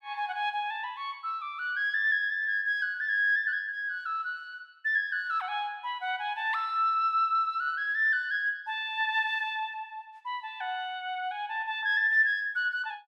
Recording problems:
none

